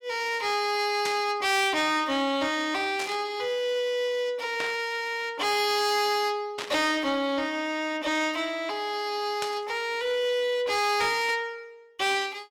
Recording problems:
distortion; soft clipping, signal-to-distortion ratio 11 dB
static burst; 5 times, first at 1 s; peak -2 dB vs average level

